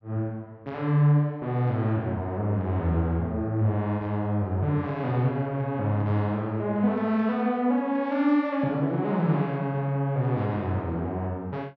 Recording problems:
none

